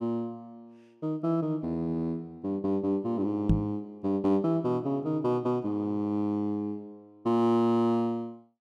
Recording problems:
knock on the microphone; at 3.5 s; peak +8 dB vs average level

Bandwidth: 12.5 kHz